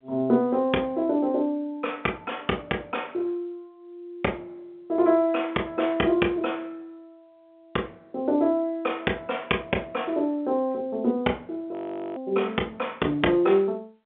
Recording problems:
phone line; 260 Hz to 3.5 kHz, G.711
audio freezing; at 12 s

